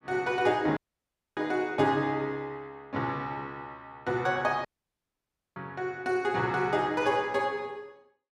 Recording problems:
audio cutting out; at 1 s for 0.5 s and at 4.5 s for 1 s

